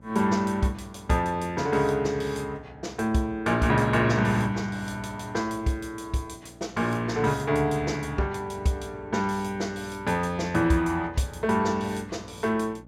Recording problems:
electrical hum; 60 Hz, harmonics up to 900 Hz, SNR 23 dB

